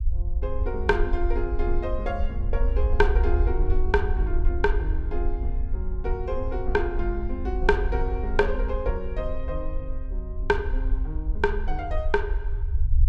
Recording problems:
rumble; below 58 Hz, SNR 0 dB

